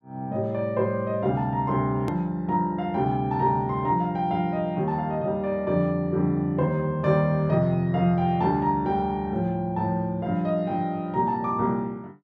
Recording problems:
hard cut with a click; at 2 s

